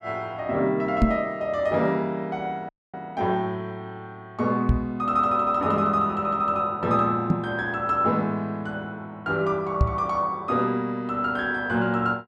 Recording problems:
microphone bump; 4 times, first at 1 s; peak +8 dB vs average level
dropout; at 2.5 s

